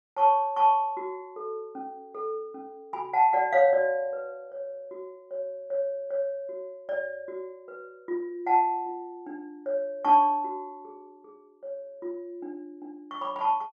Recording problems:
none

